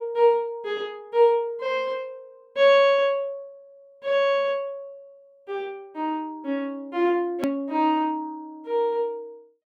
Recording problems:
edit click; at 7.5 s

